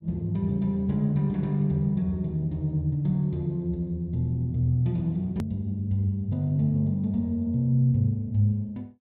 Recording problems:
edit click; at 5.5 s

